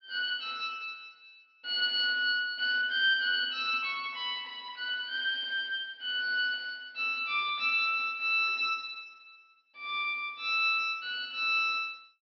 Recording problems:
treble missing; nothing above 5.5 kHz

